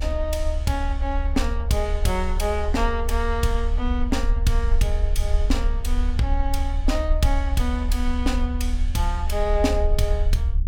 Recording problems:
low-frequency rumble; below 70 Hz, strongest tone 32 Hz, SNR -1 dB

